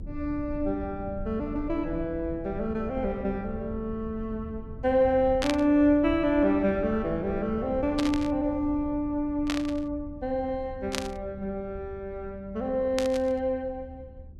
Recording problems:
rumble; below 110 Hz, SNR 14 dB
burst of static; 5 times, first at 5.5 s; peak +1 dB vs average level

